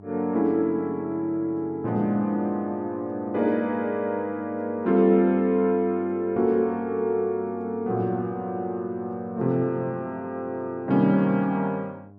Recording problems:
hum; 50 Hz, harmonics up to 1.1 kHz, SNR 22 dB

